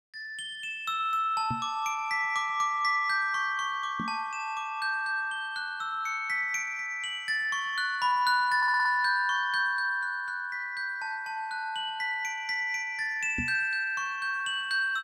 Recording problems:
knock on the microphone; at 1.5 s, at 4 s and at 13 s; peak -2 dB vs average level
stutter; at 8.5 s

